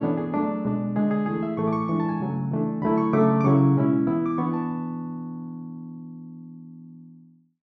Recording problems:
none

